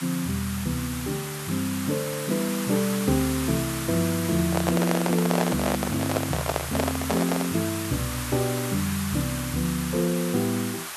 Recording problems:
background hiss; SNR 6 dB
handling noise; from 4.5 to 7.5 s; peak +4 dB vs average level

